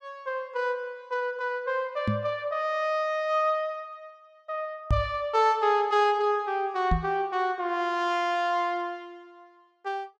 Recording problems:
microphone bump; at 2 s, at 5 s and at 7 s; peak +5 dB vs average level

